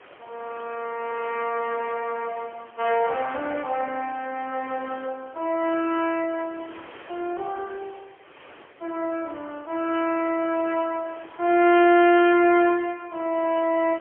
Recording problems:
telephone audio; 280 Hz to 3.5 kHz, AMR-NB, then MP3
wind noise; below 2.4 kHz, SNR 23 dB

